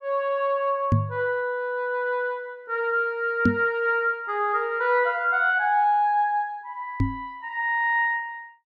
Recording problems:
knock on the microphone; at 1 s, at 3.5 s and at 7 s; peak +7 dB vs average level

